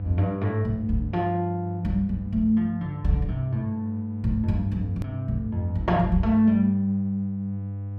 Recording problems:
electrical hum; 50 Hz, harmonics up to 500 Hz, SNR 9 dB
click at an edit; at 5 s

